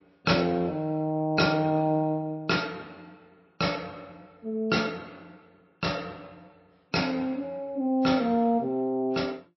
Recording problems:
lossy codec; MP3, log-spectral distance 3 dB, nothing above 5.5 kHz

